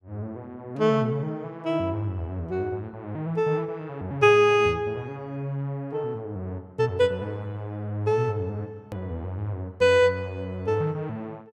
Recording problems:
click at an edit; at 9 s

